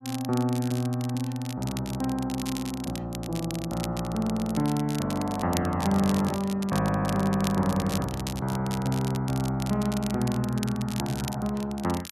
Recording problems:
crackling; vinyl, SNR 12 dB

